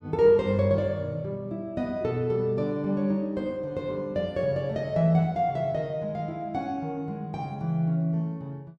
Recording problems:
none

